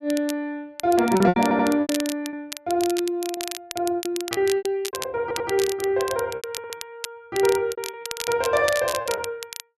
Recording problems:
crackle; vinyl, SNR 10 dB
lost packets; 13% of the sound replaced, filled with repeated pitch periods
stutter; at 1.5 s, at 5 s and at 6.5 s

